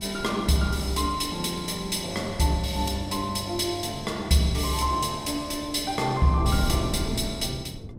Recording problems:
wind noise; below 230 Hz, SNR 11 dB

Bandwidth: 16 kHz